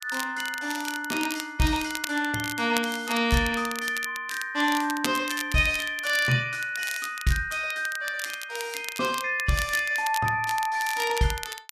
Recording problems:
crackling; vinyl, SNR 10 dB

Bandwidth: 14.5 kHz